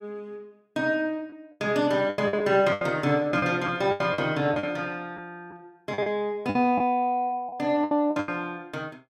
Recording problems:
packet loss; 10% of the sound replaced, filled with the last packet

